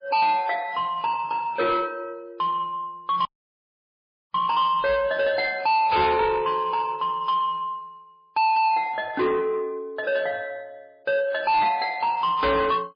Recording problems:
codec artefacts; MP3, log-spectral distance 2 dB, nothing above 4.5 kHz
distortion; soft clipping, signal-to-distortion ratio 6 dB
audio cutting out; at 3.5 s for 1 s

